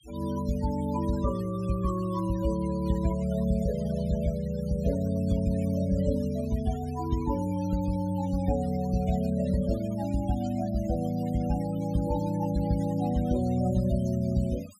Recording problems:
denoising artefacts; signal-to-artefact ratio 19 dB

